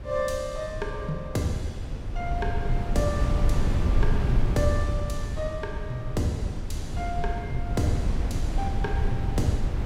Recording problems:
wind on the microphone; below 100 Hz, SNR -1 dB

